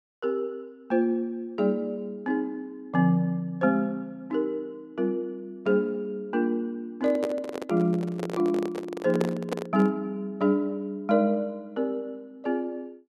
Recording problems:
handling noise; from 7 to 10 s; peak +3 dB vs average level

